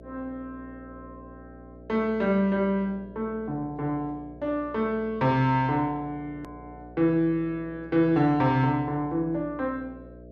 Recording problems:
hum; 60 Hz, harmonics up to 660 Hz, SNR 20 dB
edit click; at 6.5 s

